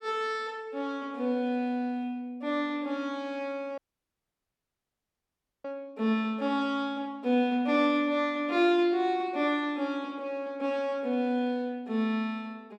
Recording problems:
dropout; at 4 s for 2 s

